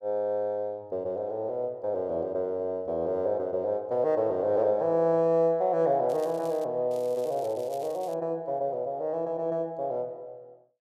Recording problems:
crackle; at 6 s and from 7 to 8 s; loose cable, SNR 24 dB

